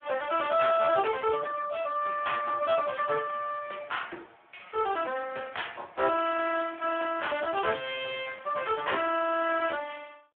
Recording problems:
phone line; 280 Hz to 3.4 kHz, Speex

